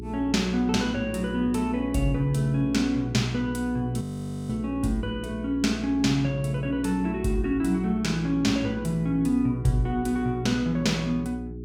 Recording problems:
electrical hum; 60 Hz, harmonics up to 420 Hz, SNR 11 dB
frozen audio; at 4 s

